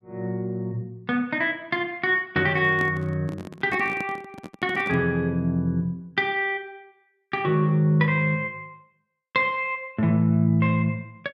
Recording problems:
microphone handling noise; from 2.5 to 5 s; peak -5 dB vs average level

